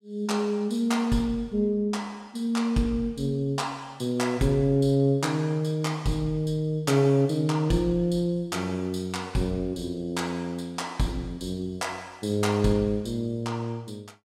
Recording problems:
none

